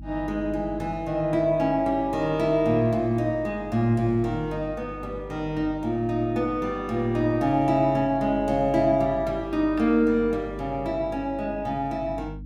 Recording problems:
hum; 50 Hz, harmonics up to 300 Hz, SNR 17 dB

